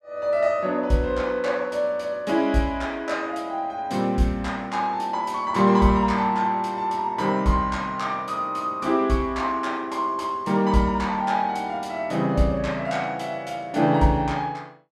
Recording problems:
none

